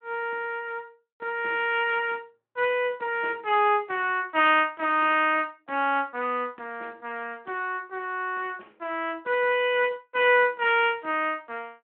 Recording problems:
telephone audio; 260 Hz to 3.2 kHz, Speex

